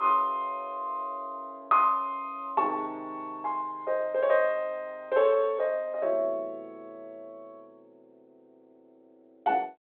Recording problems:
phone line; 300 Hz to 3.8 kHz, G.726

